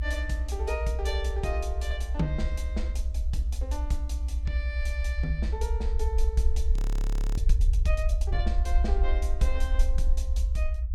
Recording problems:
rumble; below 64 Hz, SNR -6 dB
audio freezing; at 7 s for 0.5 s

